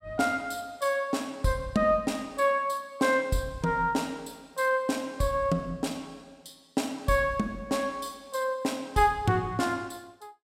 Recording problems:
none

